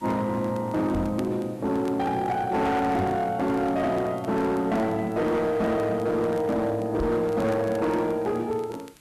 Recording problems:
distortion; hard clipping, signal-to-distortion ratio 11 dB
hiss; SNR 29 dB
crackling; vinyl, SNR 28 dB
microphone thump; at 1 s, at 3 s and at 7 s; peak -1 dB vs average level

